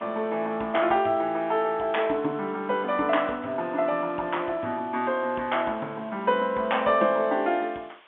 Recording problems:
phone line; 260 Hz to 3.5 kHz, G.711
hiss; SNR 27 dB

